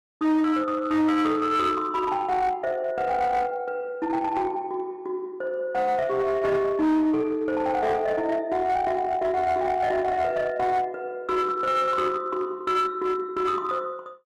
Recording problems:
distorted audio; hard clipping, uneven, signal-to-distortion ratio 11 dB

